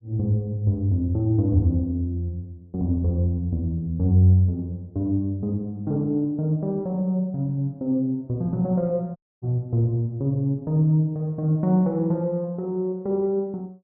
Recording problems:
dropout; at 9 s

